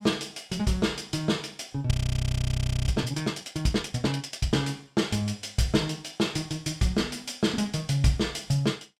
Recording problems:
frozen audio; at 2 s for 1 s

